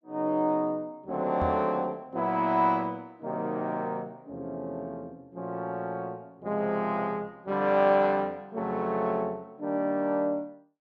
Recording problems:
microphone bump; at 1.5 s; peak -2 dB vs average level

